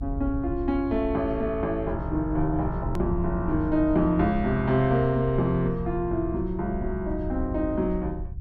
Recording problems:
rumble; below 86 Hz, SNR 9 dB
click at an edit; at 3 s

